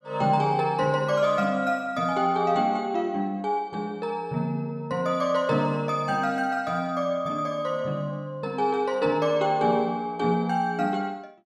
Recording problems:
none

